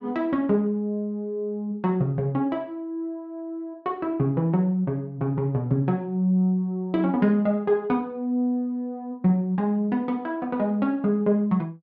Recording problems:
none

